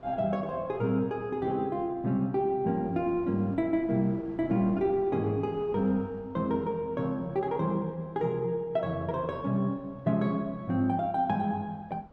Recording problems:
wind noise; below 640 Hz, SNR 24 dB

